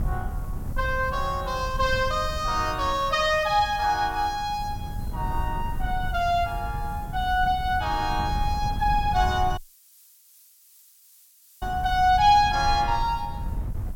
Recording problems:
background hiss; slope +6 dB per octave, SNR 27 dB
wind on the microphone; below 98 Hz, SNR 9 dB
audio cutting out; at 9.5 s for 2 s

